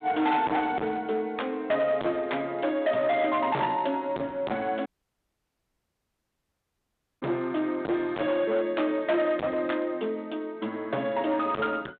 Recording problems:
phone line; 220 Hz to 3.8 kHz, G.726
distorted audio; hard clipping, signal-to-distortion ratio 4 dB
audio cutting out; at 5 s for 2.5 s

